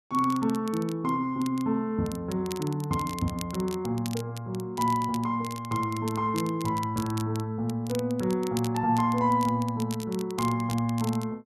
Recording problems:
crackle; vinyl, SNR 16 dB

